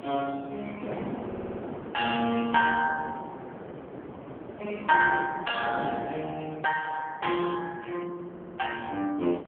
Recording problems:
phone line; 260 Hz to 3.1 kHz, AMR-NB
wind on the microphone; below 640 Hz, SNR 12 dB
stutter; at 1.5 s and at 8.5 s

